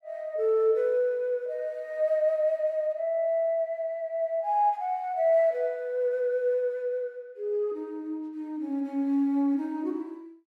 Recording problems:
none

